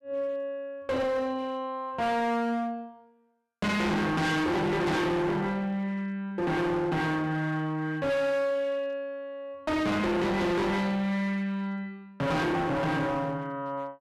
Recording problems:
distortion; hard clipping, uneven, signal-to-distortion ratio 5 dB

